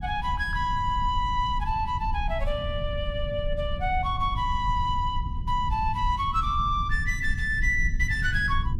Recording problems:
low-frequency rumble; below 80 Hz, SNR 5 dB

